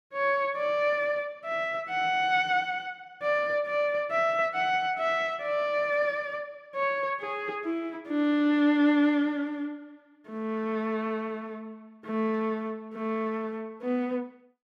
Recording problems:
none

